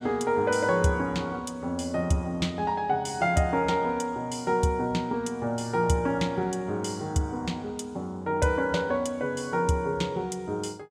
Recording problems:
none

